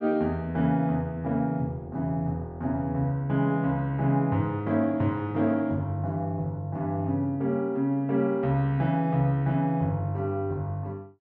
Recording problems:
none

